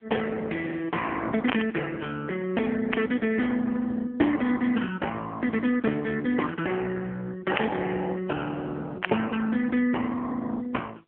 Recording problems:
telephone audio; 260 Hz to 3.2 kHz, AMR-NB
distorted audio; hard clipping, signal-to-distortion ratio 17 dB
burst of static; 4 times, first at 1.5 s; peak +4 dB vs average level

